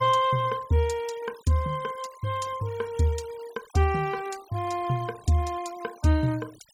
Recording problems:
denoising artefacts; signal-to-artefact ratio 21 dB

